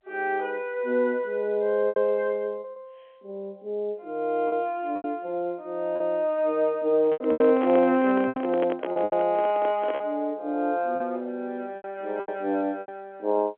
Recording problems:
telephone audio; 220 Hz to 3.5 kHz, G.711
packet loss; 8% of the sound replaced, filled with repeated pitch periods
handling noise; from 7 to 10 s; peak -2 dB vs average level

